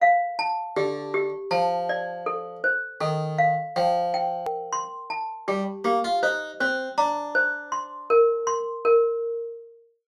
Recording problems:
hard cut with a click; at 4.5 s

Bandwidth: 14.5 kHz